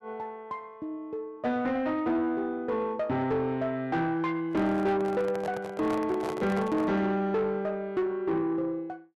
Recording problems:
distorted audio; soft clipping, signal-to-distortion ratio 12 dB
microphone handling noise; from 4.5 to 7 s; peak -3 dB vs average level

